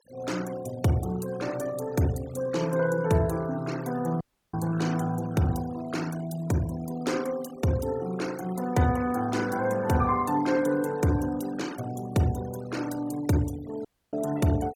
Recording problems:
denoising artefacts; signal-to-artefact ratio 18 dB
dropout; at 4 s and at 14 s

